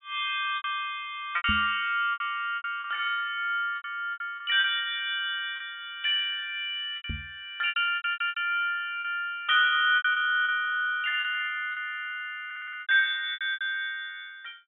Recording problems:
treble missing; nothing above 4 kHz
packet loss; 10% of the sound replaced, filled with repeated pitch periods
microphone thump; at 1.5 s and at 7 s; peak -1 dB vs average level
stutter; at 8 s and at 12 s

